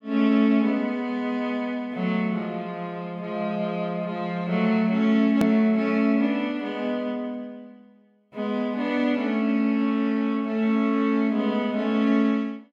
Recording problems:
hard cut with a click; at 5.5 s

